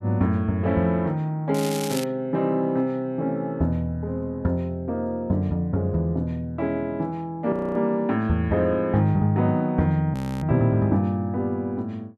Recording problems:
crackling; at 1.5 s; loose cable, SNR 11 dB
frozen audio; at 7.5 s and at 10 s

